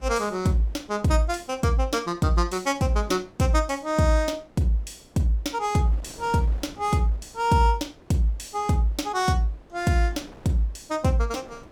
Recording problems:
wind on the microphone; below 680 Hz, SNR 25 dB

